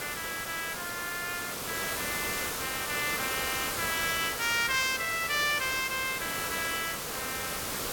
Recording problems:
background hiss; slope -3 dB per octave, SNR 2 dB

